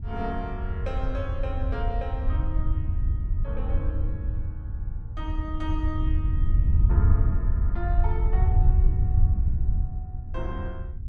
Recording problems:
wind on the microphone; below 82 Hz, SNR -10 dB

